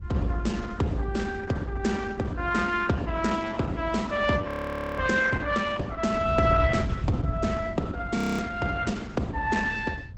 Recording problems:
codec artefacts; Opus, log-spectral distance 3 dB
wind on the microphone; below 110 Hz, SNR 6 dB
audio freezing; at 4.5 s for 0.5 s and at 8 s

